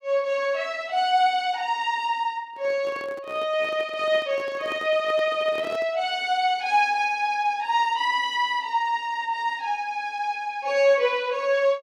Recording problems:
microphone handling noise; from 2.5 to 6 s; peak -8 dB vs average level

